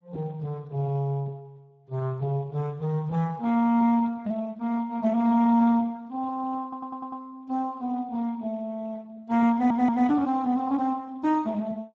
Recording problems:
lossy codec; Speex, log-spectral distance 2 dB
stutter; at 6.5 s and at 9.5 s

